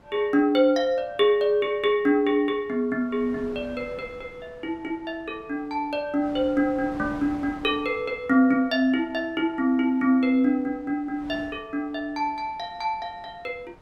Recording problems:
wind on the microphone; below 890 Hz, SNR 23 dB

